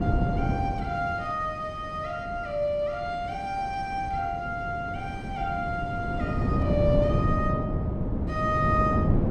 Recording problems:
wind on the microphone; below 260 Hz, SNR 0 dB

